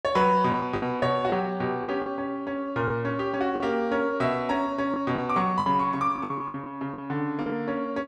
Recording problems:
packet loss; 8% of the sound replaced, filled with the last packet

